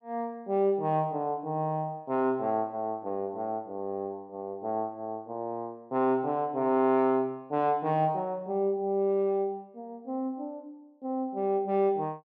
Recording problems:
none

